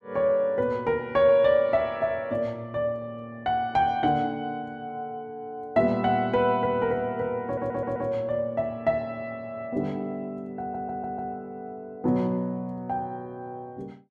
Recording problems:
audio stuttering; at 7.5 s and at 11 s

